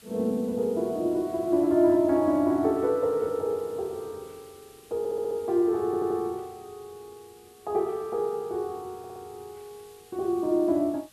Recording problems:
hiss; slope 0 dB per octave, SNR 27 dB
audio stuttering; at 5 s, at 6 s and at 9 s

